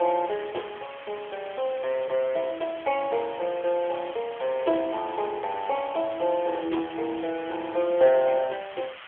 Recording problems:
telephone audio; 300 Hz to 3.4 kHz, AMR-NB
hiss; SNR 16 dB

